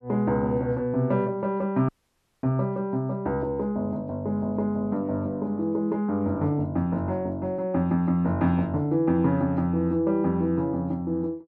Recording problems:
audio cutting out; at 2 s for 0.5 s

